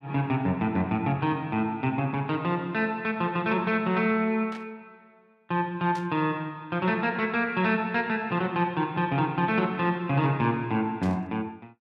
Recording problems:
static burst; at 4.5 s, at 6 s and at 11 s; peak -13 dB vs average level

